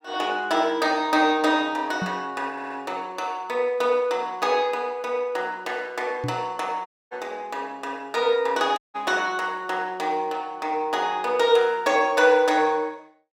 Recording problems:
microphone thump; at 2 s and at 6 s; peak -2 dB vs average level
stutter; at 2.5 s
dropout; at 7 s and at 9 s

